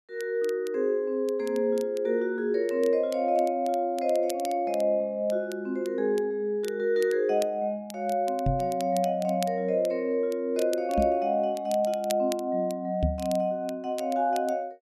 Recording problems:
crackle; vinyl, SNR 20 dB
microphone thump; at 8.5 s, at 11 s and at 13 s; peak +4 dB vs average level

